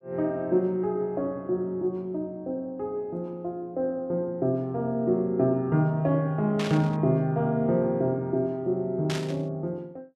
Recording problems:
static burst; at 6.5 s and at 9 s; peak -3 dB vs average level

